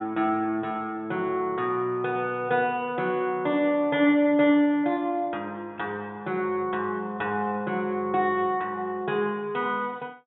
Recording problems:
treble cut off; nothing above 3.8 kHz

